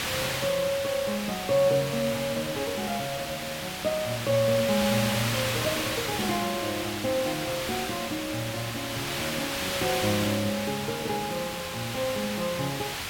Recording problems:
hiss; SNR 2 dB

